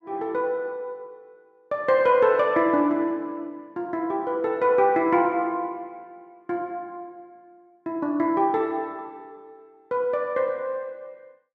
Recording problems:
none

